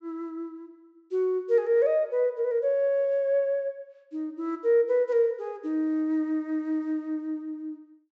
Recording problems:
treble cut off; nothing above 8 kHz

